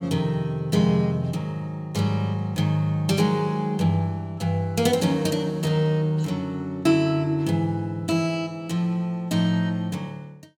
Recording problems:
none

